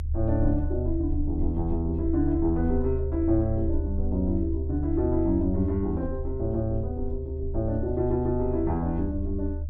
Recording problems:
low-frequency rumble; below 76 Hz, SNR 4 dB

